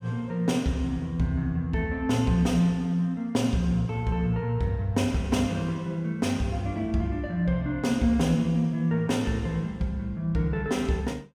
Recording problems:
none

